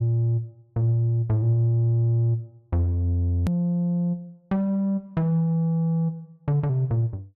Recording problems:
hard cut with a click; at 3.5 s

